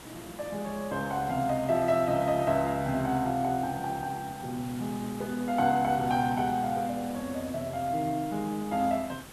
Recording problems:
background hiss; slope -4 dB per octave, SNR 16 dB

